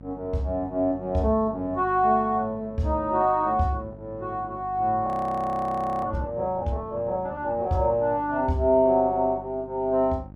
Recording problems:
electrical hum; 50 Hz, harmonics up to 850 Hz, SNR 19 dB
audio freezing; at 5 s for 1 s

